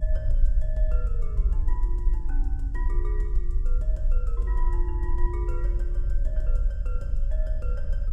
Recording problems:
rumble; below 46 Hz, strongest tone 26 Hz, SNR -14 dB

